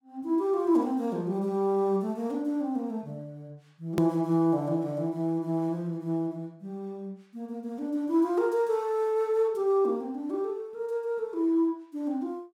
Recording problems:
hard cut with a click; at 4 s

